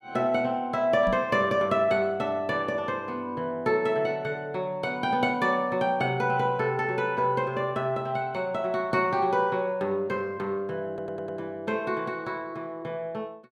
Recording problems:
knock on the microphone; at 1 s; peak -2 dB vs average level
stutter; at 11 s

